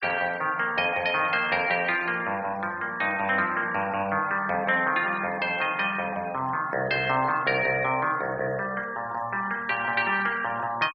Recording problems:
denoising artefacts; signal-to-artefact ratio 21 dB

